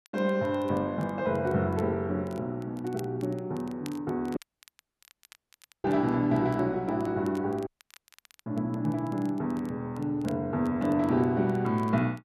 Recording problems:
crackle; vinyl, SNR 27 dB
dropout; at 4.5 s for 1.5 s and at 7.5 s for 1 s

